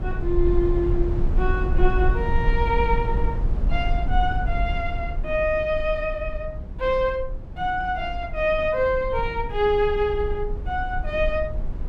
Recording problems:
rumble; below 60 Hz, SNR 4 dB

